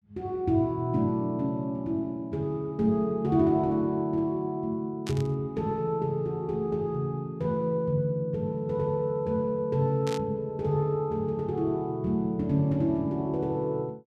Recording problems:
static burst; at 5 s and at 10 s; peak -6 dB vs average level

